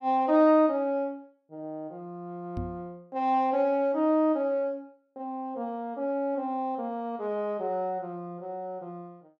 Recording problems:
knock on the microphone; at 2.5 s; peak -4 dB vs average level

